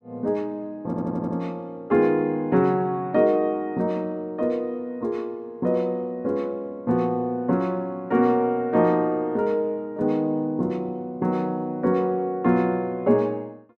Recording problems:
stutter; at 1 s

